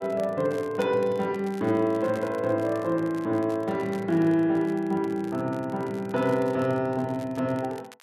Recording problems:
crackling; vinyl, SNR 25 dB

